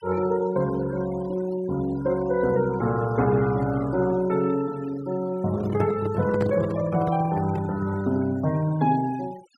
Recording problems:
noise reduction artefacts; signal-to-artefact ratio 19 dB
microphone handling noise; from 5.5 to 8 s; peak 0 dB vs average level

